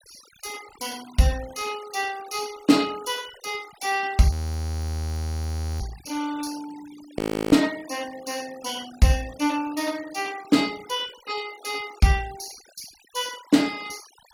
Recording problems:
noise reduction artefacts; signal-to-artefact ratio 19 dB
audio freezing; at 4.5 s for 1.5 s and at 7 s

